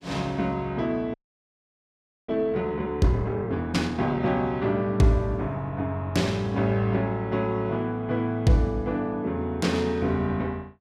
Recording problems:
audio freezing; at 1 s for 1 s

